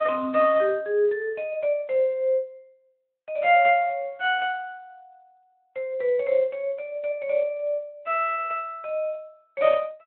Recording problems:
phone line; 300 Hz to 3.5 kHz, Speex

